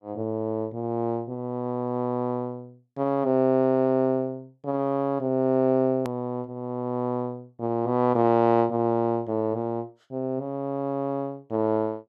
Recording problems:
hard cut with a click; at 6 s

